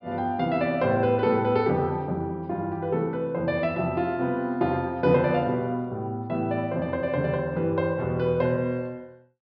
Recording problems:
treble cut off; nothing above 5.5 kHz

